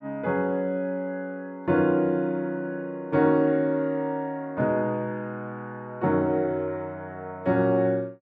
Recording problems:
none

